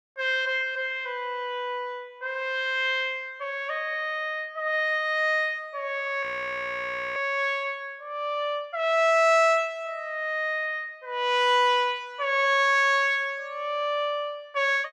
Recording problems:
frozen audio; at 6 s for 1 s

